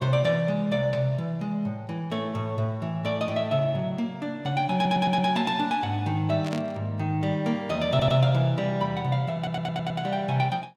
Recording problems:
audio stuttering; at 4.5 s, at 8 s and at 9.5 s
static burst; at 6.5 s; peak -7 dB vs average level

